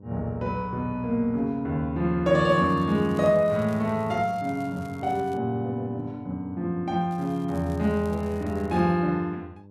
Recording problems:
hum; 50 Hz, harmonics up to 900 Hz, SNR 23 dB
crackling; from 2.5 to 5.5 s and from 7 to 9 s; loose cable, SNR 28 dB

